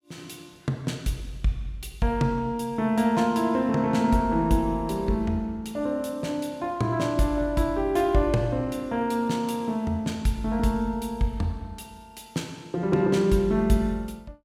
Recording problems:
none

